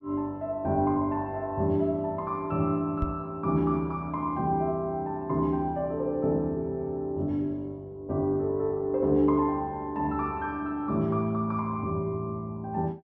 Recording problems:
microphone bump; at 3 s; peak +1 dB vs average level

